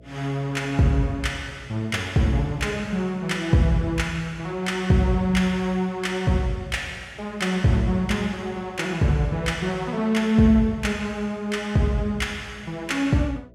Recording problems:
electrical hum; 60 Hz, harmonics up to 660 Hz, SNR 27 dB

